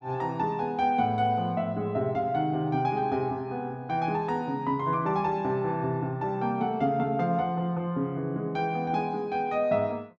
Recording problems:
none

